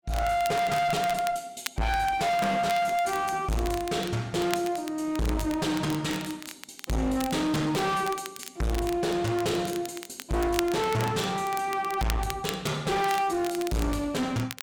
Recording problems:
distortion; hard clipping, uneven, signal-to-distortion ratio 5 dB
crackling; vinyl, SNR 13 dB

